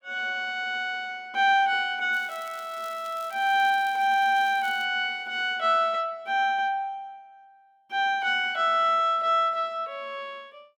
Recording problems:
crackle; from 2 to 5 s; loose cable, SNR 24 dB

